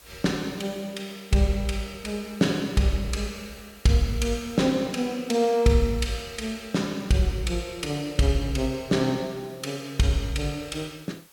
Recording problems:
background hiss; slope -1 dB per octave, SNR 25 dB

